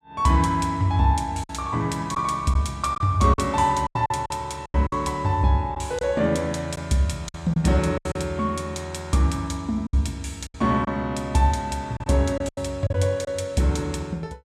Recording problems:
lost packets; 7% of the sound replaced, filled with silence

